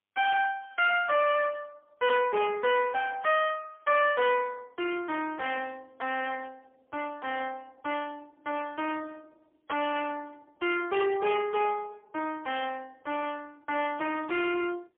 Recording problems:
phone line; 340 Hz to 3.2 kHz, AMR-NB, then MP3
distortion; soft clipping, signal-to-distortion ratio 7 dB

